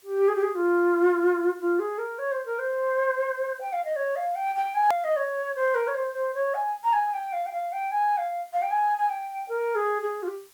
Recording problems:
background hiss; slope +1 dB per octave, SNR 29 dB
edit click; at 5 s

